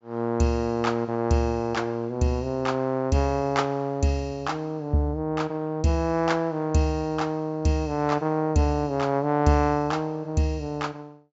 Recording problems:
low-pass filter; nothing above 8 kHz

